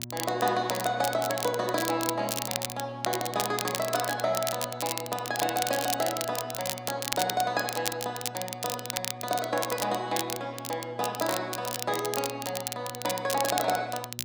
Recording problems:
hum; 60 Hz, harmonics up to 960 Hz, SNR 15 dB
crackle; vinyl, SNR 4 dB

